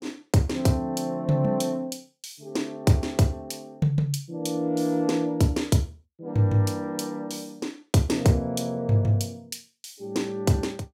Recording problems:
none

